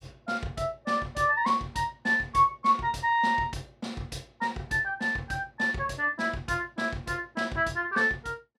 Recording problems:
none

